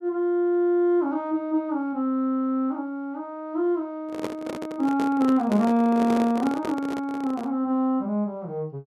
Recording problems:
microphone handling noise; from 4 to 7.5 s; peak -2 dB vs average level

